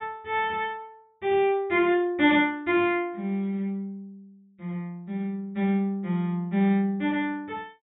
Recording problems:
treble missing; nothing above 4 kHz

